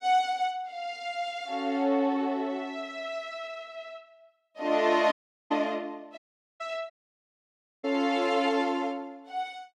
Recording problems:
audio cutting out; at 5 s, at 6 s and at 7 s for 1 s

